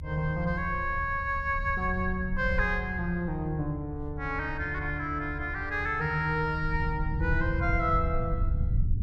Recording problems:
rumble; below 92 Hz, SNR 5 dB

